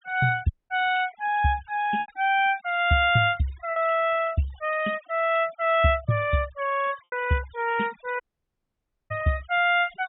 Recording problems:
treble missing; nothing above 3.7 kHz
noise reduction artefacts; signal-to-artefact ratio 21 dB
packet loss; 3% of the sound replaced, filled with repeated pitch periods
audio cutting out; at 0.5 s and at 8 s for 1 s

